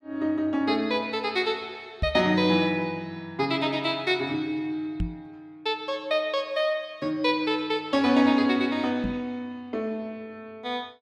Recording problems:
microphone bump; at 2 s, at 5 s and at 9 s; peak +1 dB vs average level

